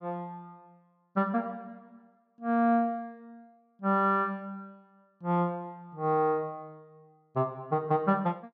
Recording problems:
none

